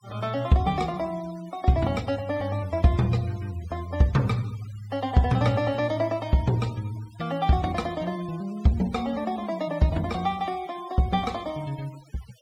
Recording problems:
denoising artefacts; signal-to-artefact ratio 22 dB

